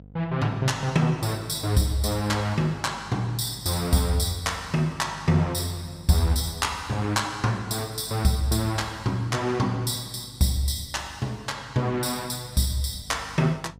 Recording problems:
electrical hum; 50 Hz, harmonics up to 700 Hz, SNR 22 dB

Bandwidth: 15.5 kHz